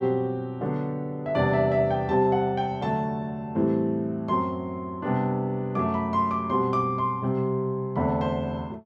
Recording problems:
none

